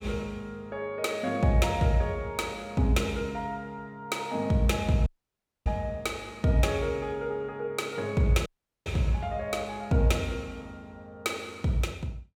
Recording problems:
dropout; at 5 s for 0.5 s and at 8.5 s

